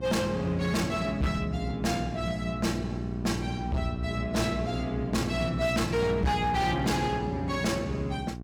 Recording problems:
distorted audio; hard clipping, uneven, signal-to-distortion ratio 8 dB
electrical hum; 60 Hz, harmonics up to 780 Hz, SNR 6 dB

